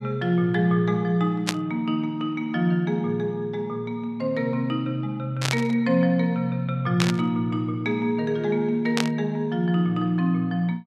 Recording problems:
burst of static; 4 times, first at 1.5 s; peak +4 dB vs average level

